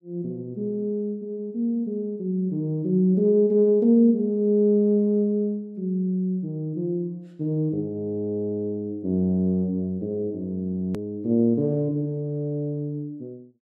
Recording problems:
click at an edit; at 11 s

